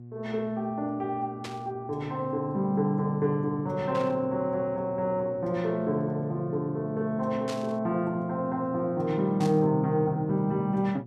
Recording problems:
hum; 60 Hz, harmonics up to 480 Hz, SNR 16 dB
burst of static; 4 times, first at 1.5 s; peak -7 dB vs average level

